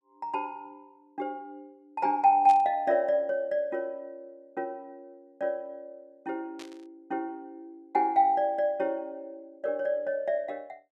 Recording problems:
static burst; at 2.5 s and at 6.5 s; peak -11 dB vs average level

